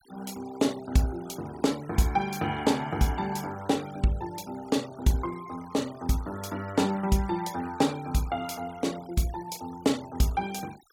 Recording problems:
denoising artefacts; signal-to-artefact ratio 20 dB

